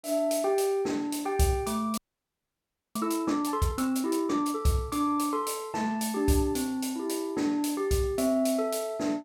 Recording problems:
audio freezing; at 2 s for 1 s

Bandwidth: 17 kHz